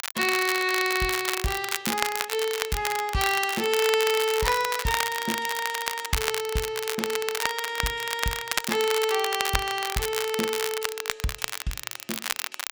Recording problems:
crackle; vinyl, SNR 3 dB

